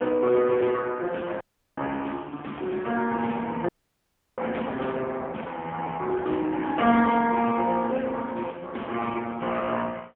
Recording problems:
phone line; 260 Hz to 3.2 kHz, AMR-NB, then MP3
audio cutting out; at 1.5 s and at 3.5 s for 0.5 s

